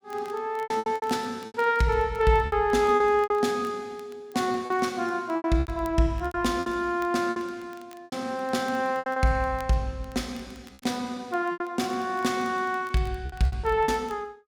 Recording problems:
crackling; vinyl, SNR 28 dB
packet loss; 11% of the sound replaced, filled with repeated pitch periods

